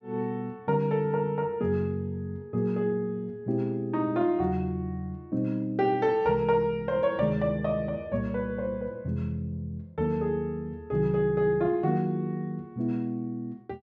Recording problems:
none

